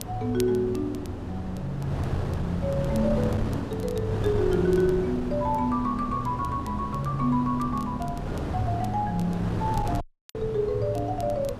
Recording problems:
wind on the microphone; below 440 Hz, SNR 6 dB
crackling; vinyl, SNR 24 dB
dropout; at 10 s

